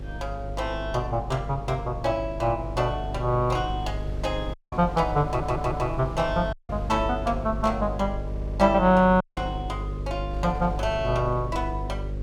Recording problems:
hum; 50 Hz, harmonics up to 550 Hz, SNR 8 dB
wind on the microphone; below 130 Hz, SNR 15 dB
audio cutting out; at 4.5 s, at 6.5 s and at 9 s
stutter; at 5.5 s and at 8.5 s

